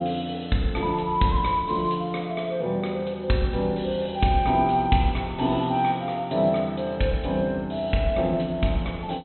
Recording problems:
low-pass filter; nothing above 4.1 kHz

